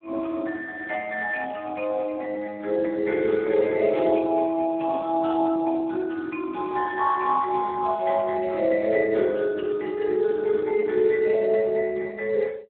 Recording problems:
telephone audio; 300 Hz to 2.5 kHz, Speex

